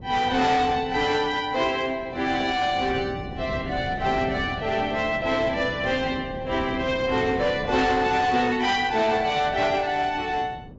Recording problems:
lossy compression; AAC, log-spectral distance 3 dB, nothing above 7.6 kHz
distorted audio; hard clipping, uneven, signal-to-distortion ratio 12 dB
wind on the microphone; below 340 Hz, SNR 15 dB

